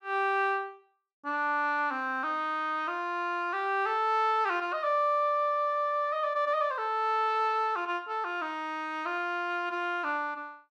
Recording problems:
none

